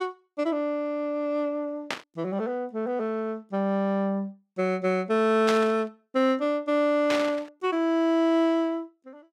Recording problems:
static burst; at 2 s, at 5.5 s and at 7 s; peak +1 dB vs average level

